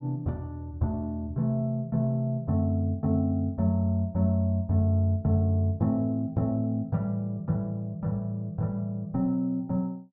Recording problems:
none

